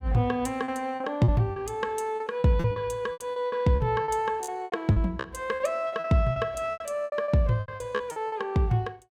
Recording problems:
lost packets; 15% of the sound replaced, filled with repeated pitch periods

